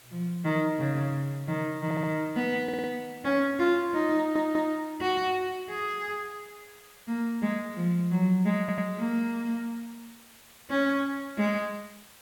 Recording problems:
background hiss; SNR 23 dB
audio stuttering; 4 times, first at 2 s

